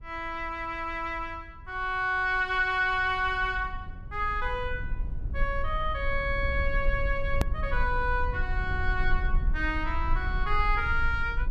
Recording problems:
rumble; below 54 Hz, SNR 5 dB
edit click; at 7.5 s

